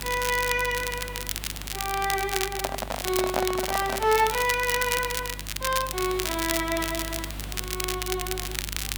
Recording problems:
electrical hum; 50 Hz, harmonics up to 350 Hz, SNR 13 dB
hiss; SNR 15 dB
crackle; vinyl, SNR 4 dB
microphone handling noise; from 2.5 to 4 s; peak +4 dB vs average level

